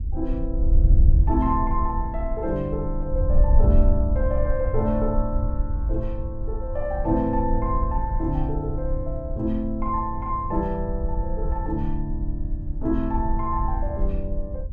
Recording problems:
wind on the microphone; below 64 Hz, SNR -1 dB

